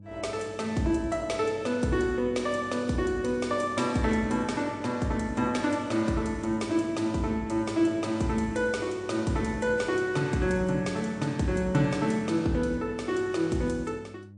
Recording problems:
lossy codec; MP3, log-spectral distance 2 dB, nothing above 9 kHz
electrical hum; 50 Hz, harmonics up to 500 Hz, SNR 20 dB

